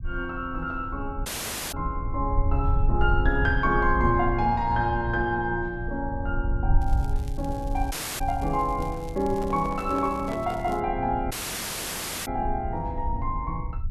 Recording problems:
rumble; below 74 Hz, SNR 4 dB
dropout; at 1.5 s, at 8 s and at 11 s for 1 s
crackling; from 7 to 11 s; loose cable, SNR 24 dB
handling noise; from 9.5 to 11 s; peak -4 dB vs average level

